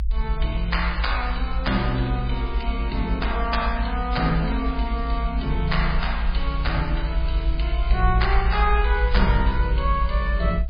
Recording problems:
codec artefacts; MP3, log-spectral distance 3 dB
rumble; below 58 Hz, SNR 0 dB
crackle; from 4 to 8 s; loose cable, SNR 20 dB

